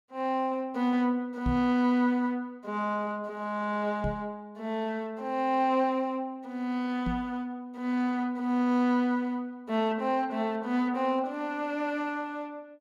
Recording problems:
microphone thump; at 1.5 s, at 4 s and at 7 s; peak +2 dB vs average level

